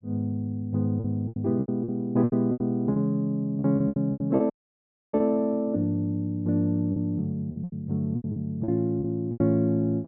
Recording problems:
packet loss; 13% of the sound replaced, filled with repeated pitch periods
dropout; at 4.5 s for 0.5 s

